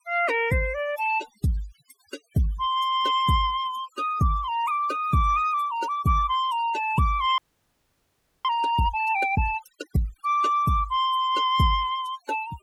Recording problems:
denoising artefacts; signal-to-artefact ratio 18 dB
frozen audio; at 7.5 s for 1 s

